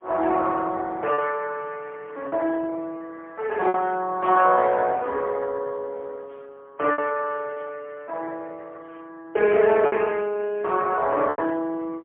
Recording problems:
phone line; 280 Hz to 2.7 kHz, AMR-NB, then MP3
lost packets; 3% of the sound replaced, filled with repeated pitch periods

